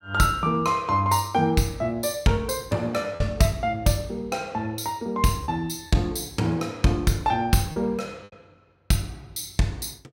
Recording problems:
lost packets; 2% of the sound replaced, filled with repeated pitch periods

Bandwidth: 16.5 kHz